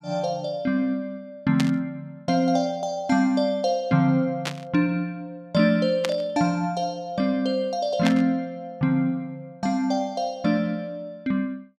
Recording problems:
static burst; 4 times, first at 1.5 s; peak +1 dB vs average level

